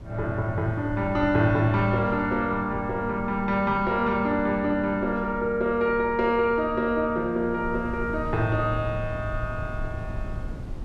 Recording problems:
wind noise; below 120 Hz, SNR 14 dB

